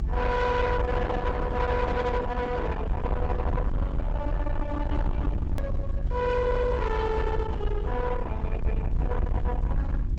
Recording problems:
lossy compression; Opus, log-spectral distance 2 dB, nothing above 7.8 kHz
distorted audio; soft clipping, signal-to-distortion ratio 8 dB
electrical hum; 50 Hz, harmonics up to 350 Hz, SNR 9 dB
rumble; below 78 Hz, SNR 1 dB
hard cut with a click; at 5.5 s

